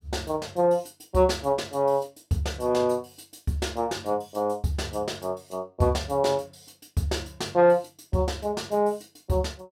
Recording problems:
none

